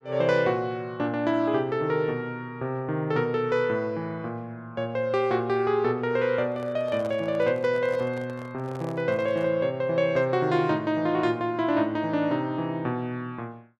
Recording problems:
microphone handling noise; from 6.5 to 9.5 s; peak -7 dB vs average level

